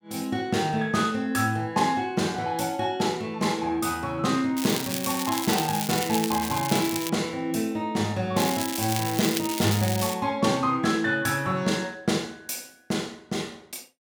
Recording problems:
crackle; from 4.5 to 7 s and from 8.5 to 10 s; loose cable, SNR 5 dB

